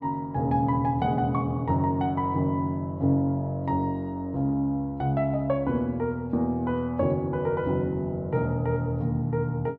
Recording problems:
none

